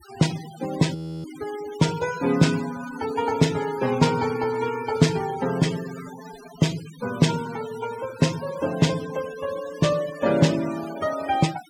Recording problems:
noise reduction artefacts; signal-to-artefact ratio 14 dB
frozen audio; at 1 s

